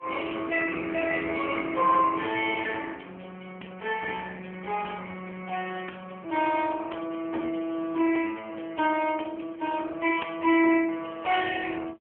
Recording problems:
phone line; 260 Hz to 3.3 kHz, AMR-NB

